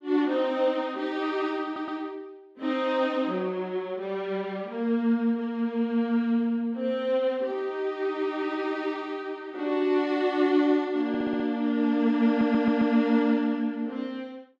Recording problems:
audio stuttering; at 1.5 s, at 11 s and at 12 s

